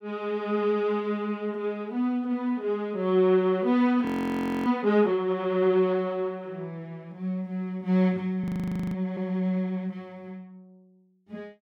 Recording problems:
frozen audio; at 4 s for 0.5 s and at 8.5 s for 0.5 s

